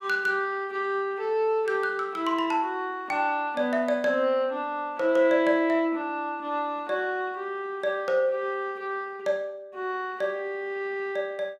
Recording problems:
none

